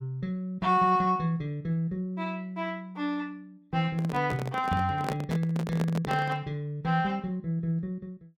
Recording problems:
microphone handling noise; from 4 to 6.5 s; peak +1 dB vs average level

